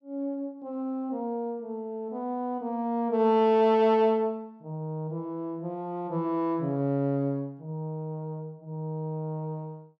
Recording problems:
none

